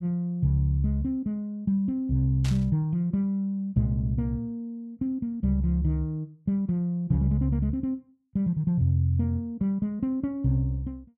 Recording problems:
static burst; at 2.5 s; peak -8 dB vs average level

